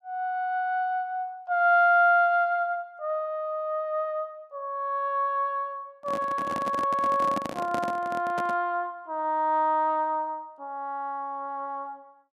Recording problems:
microphone handling noise; from 6 to 8.5 s; peak -2 dB vs average level

